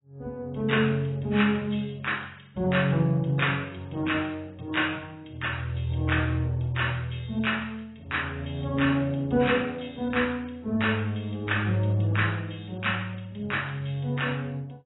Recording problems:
codec artefacts; AAC, log-spectral distance 5 dB, nothing above 3.8 kHz

